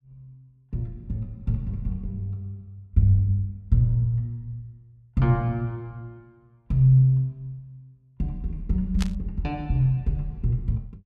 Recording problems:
burst of static; at 9 s; peak -4 dB vs average level

